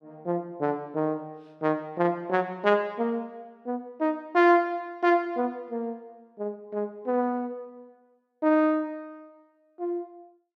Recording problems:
none

